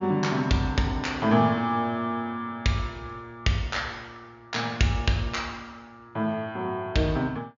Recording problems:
low-pass filter; nothing above 7.1 kHz

